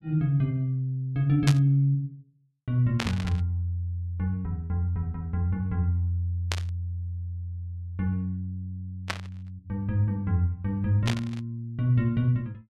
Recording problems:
burst of static; 5 times, first at 1.5 s; peak +3 dB vs average level

